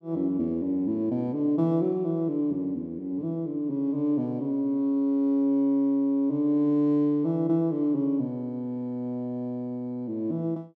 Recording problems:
none

